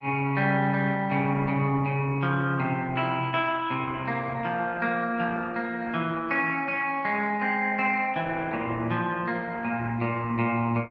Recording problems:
lossy codec; Opus, log-spectral distance 3 dB

